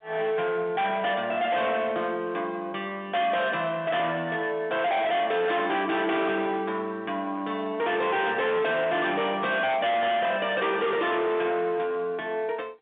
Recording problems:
telephone audio; 150 Hz to 3.6 kHz, G.711
distortion; hard clipping, signal-to-distortion ratio 7 dB

